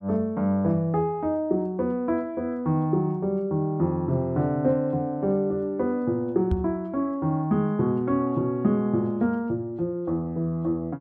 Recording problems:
microphone thump; at 6.5 s; peak +3 dB vs average level

